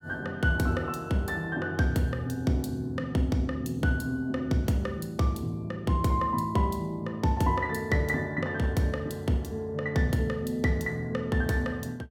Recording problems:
none

